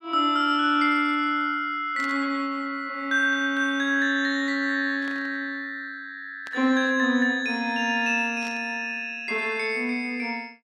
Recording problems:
burst of static; 4 times, first at 2 s; peak -13 dB vs average level

